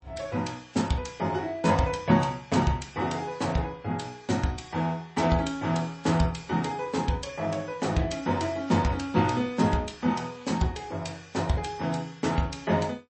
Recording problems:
lossy codec; MP3, log-spectral distance 3 dB, nothing above 8.2 kHz

